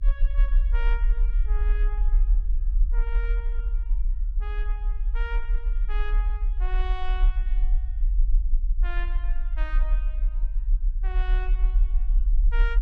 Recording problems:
rumble; below 40 Hz, SNR -14 dB

